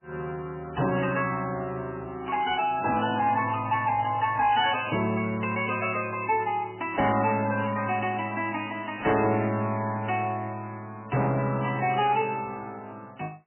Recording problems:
lossy compression; MP3, log-spectral distance 5 dB, nothing above 2.7 kHz
distortion; soft clipping, signal-to-distortion ratio 12 dB

